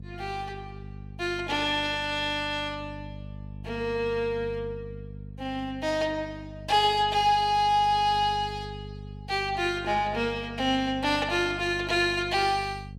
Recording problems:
hum; 50 Hz, harmonics up to 500 Hz, SNR 15 dB

